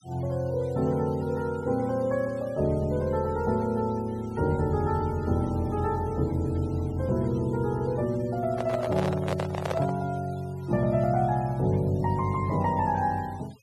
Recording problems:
noise reduction artefacts; signal-to-artefact ratio 23 dB
handling noise; from 8.5 to 10 s; peak 0 dB vs average level

